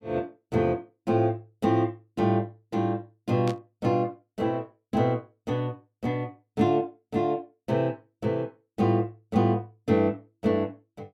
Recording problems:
static burst; at 3.5 s; peak -7 dB vs average level

